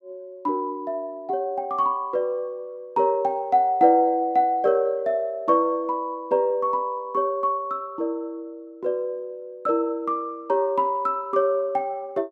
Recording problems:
none

